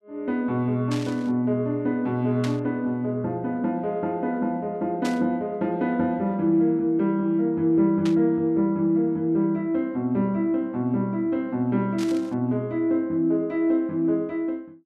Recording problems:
burst of static; 5 times, first at 1 s; peak -7 dB vs average level

